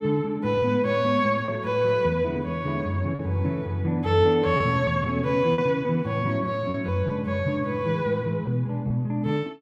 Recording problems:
lost packets; 3% of the sound replaced, filled with repeated pitch periods

